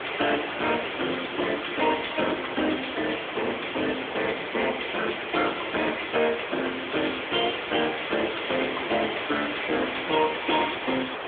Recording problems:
phone line; 280 Hz to 3.5 kHz, AMR-NB
distorted audio; soft clipping, signal-to-distortion ratio 10 dB
background hiss; SNR 6 dB

